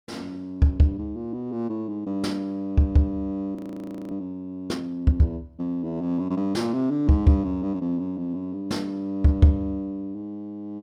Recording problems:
frozen audio; at 3.5 s for 0.5 s

